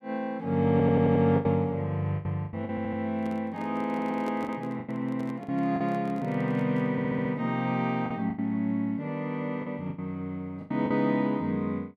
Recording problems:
packet loss; 8% of the sound replaced, filled with the last packet
audio stuttering; 4 times, first at 0.5 s
handling noise; from 3 to 7.5 s; peak -7 dB vs average level

